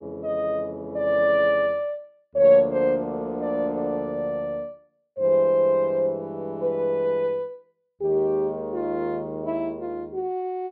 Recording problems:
treble missing; nothing above 5.5 kHz

